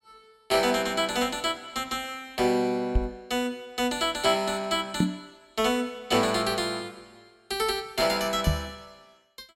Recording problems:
knock on the microphone; at 3 s, at 5 s and at 8.5 s; peak +7 dB vs average level

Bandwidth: 16 kHz